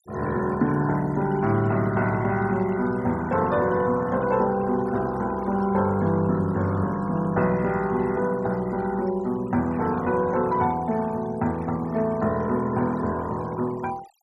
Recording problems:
denoising artefacts; signal-to-artefact ratio 21 dB

